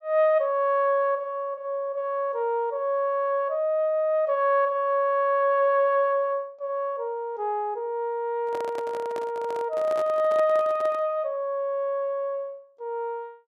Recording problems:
handling noise; from 8.5 to 11 s; peak -8 dB vs average level

